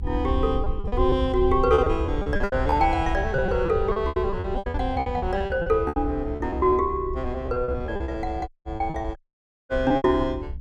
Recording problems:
rumble; below 80 Hz, SNR 7 dB
lost packets; 17% of the sound replaced, filled with repeated pitch periods
audio cutting out; at 8.5 s and at 9 s for 0.5 s

